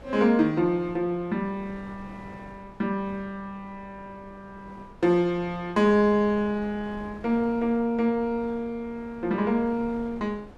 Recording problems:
wind noise; below 580 Hz, SNR 21 dB

